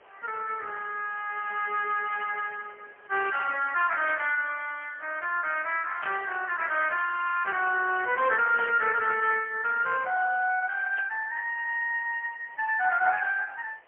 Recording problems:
telephone audio; 340 Hz to 3.1 kHz, AMR-NB, then MP3
background hiss; SNR 28 dB
static burst; 4 times, first at 4 s; peak -6 dB vs average level

